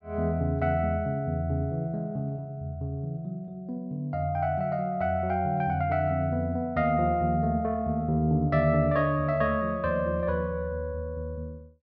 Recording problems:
none

